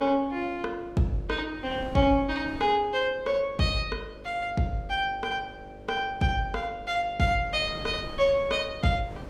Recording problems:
electrical hum; 50 Hz, harmonics up to 600 Hz, SNR 20 dB
wind noise; below 470 Hz, SNR 19 dB

